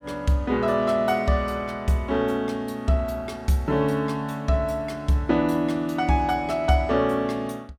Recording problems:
none

